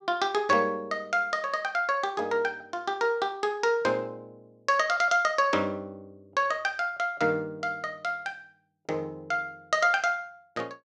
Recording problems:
none

